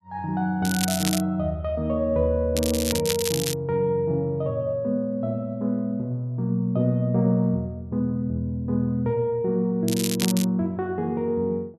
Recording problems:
crackle; at 0.5 s, at 2.5 s and at 10 s; loose cable, SNR 5 dB

